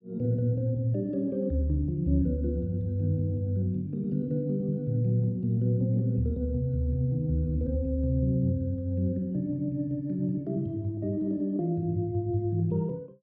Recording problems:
none

